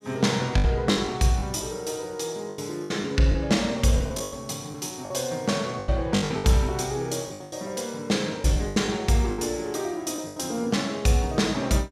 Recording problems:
packet loss; 11% of the sound replaced, filled with the last packet

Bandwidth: 14.5 kHz